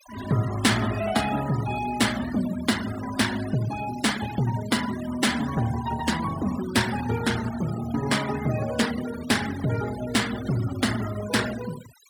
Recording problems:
denoising artefacts; signal-to-artefact ratio 11 dB

